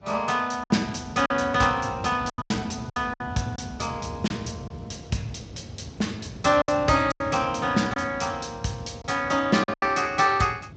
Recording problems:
lossy codec; Speex, log-spectral distance 5 dB
wind noise; below 260 Hz, SNR 14 dB
lost packets; 7% of the sound replaced, filled with silence

